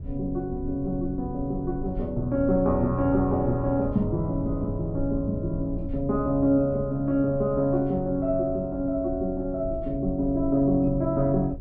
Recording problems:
rumble; below 88 Hz, SNR 12 dB

